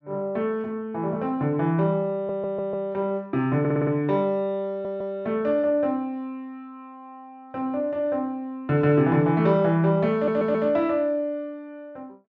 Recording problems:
treble missing; nothing above 8 kHz
stutter; 4 times, first at 2 s

